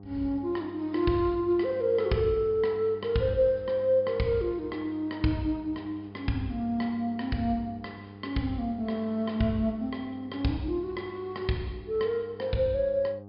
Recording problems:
treble cut off; nothing above 5.5 kHz
electrical hum; 50 Hz, harmonics up to 1.1 kHz, SNR 18 dB

